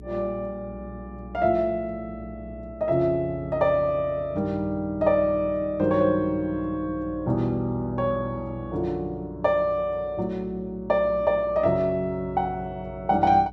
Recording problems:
hum; 60 Hz, harmonics up to 420 Hz, SNR 19 dB

